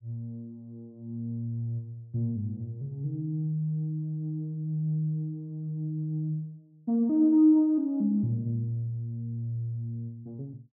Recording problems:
none

